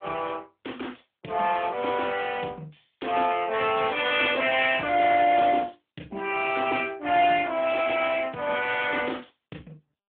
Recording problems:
telephone audio; 220 Hz to 3.4 kHz, AMR-NB

